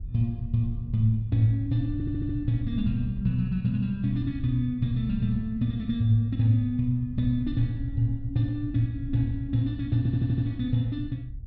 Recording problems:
treble cut off; nothing above 5.5 kHz
wind noise; below 84 Hz, SNR 12 dB
stutter; at 2 s and at 10 s

